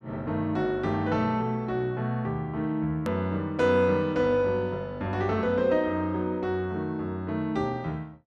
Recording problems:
edit click; at 3 s

